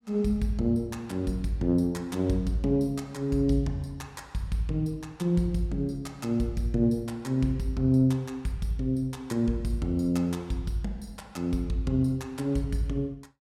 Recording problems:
none

